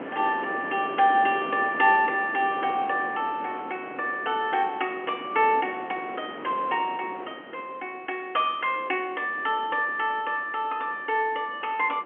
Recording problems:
telephone audio; 240 Hz to 3.3 kHz, G.711
wind noise; below 1 kHz, SNR 14 dB

